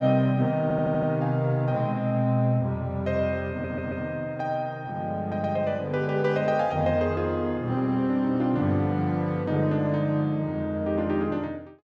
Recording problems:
stutter; at 0.5 s and at 3.5 s

